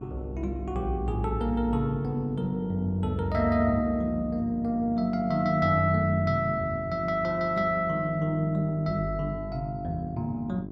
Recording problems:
hum; 50 Hz, harmonics up to 1.1 kHz, SNR 13 dB

